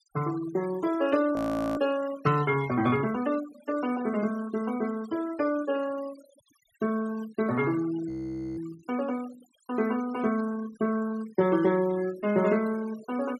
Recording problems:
denoising artefacts; signal-to-artefact ratio 18 dB
frozen audio; at 1.5 s and at 8 s

